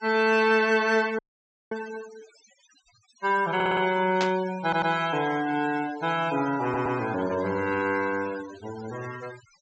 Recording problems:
treble cut off; nothing above 8 kHz
denoising artefacts; signal-to-artefact ratio 16 dB
dropout; at 1 s for 0.5 s
audio stuttering; at 3.5 s, at 4.5 s and at 6.5 s
burst of static; at 4 s; peak -1 dB vs average level

